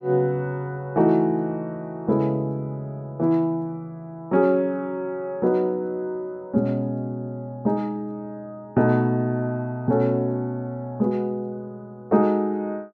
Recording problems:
none

